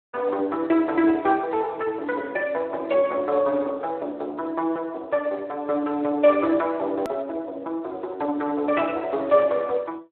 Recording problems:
telephone audio; 260 Hz to 3.3 kHz, Speex
click at an edit; at 7 s

